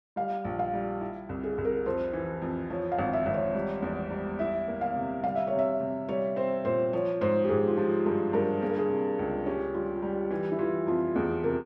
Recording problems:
none

